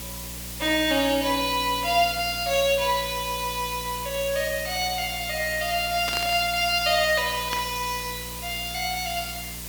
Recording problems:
electrical hum; 60 Hz, harmonics up to 660 Hz, SNR 17 dB
background hiss; slope +1 dB per octave, SNR 10 dB
burst of static; at 6 s and at 7.5 s; peak -3 dB vs average level

